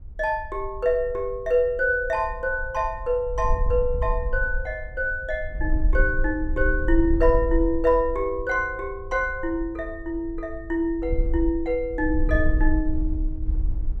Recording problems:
wind noise; below 52 Hz, SNR 5 dB

